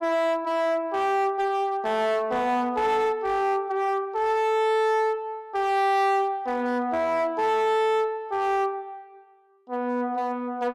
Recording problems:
distorted audio; hard clipping, signal-to-distortion ratio 10 dB

